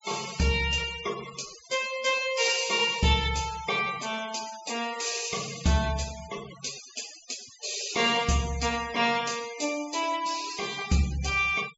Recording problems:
treble cut off; nothing above 8 kHz
noise reduction artefacts; signal-to-artefact ratio 14 dB

